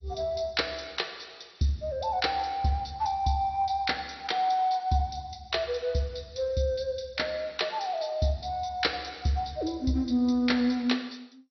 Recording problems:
codec artefacts; MP2, log-spectral distance 5 dB, nothing above 5.8 kHz

